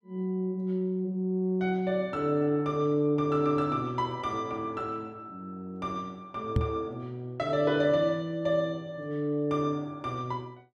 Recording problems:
microphone bump; at 6.5 s; peak +7 dB vs average level

